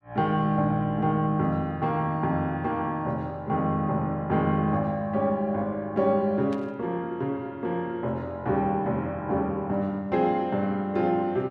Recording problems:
burst of static; at 6.5 s; peak -14 dB vs average level

